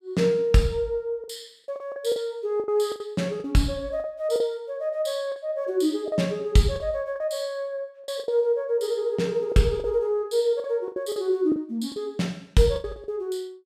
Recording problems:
lost packets; 9% of the sound replaced, filled with the last packet

